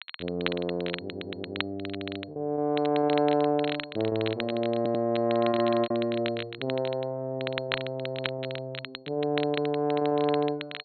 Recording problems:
low-pass filter; nothing above 4.3 kHz
crackle; vinyl, SNR 10 dB
packet loss; 8% of the sound replaced, filled with repeated pitch periods
stutter; at 1 s and at 5 s

